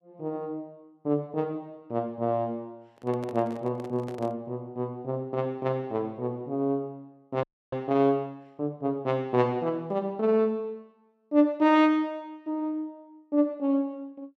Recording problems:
handling noise; from 3 to 4.5 s; peak -9 dB vs average level
frozen audio; at 7.5 s

